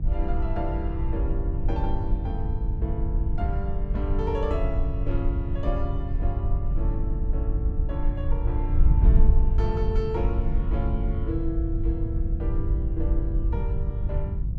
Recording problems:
mains hum; 50 Hz, harmonics up to 350 Hz, SNR 3 dB
wind on the microphone; below 66 Hz, SNR -6 dB

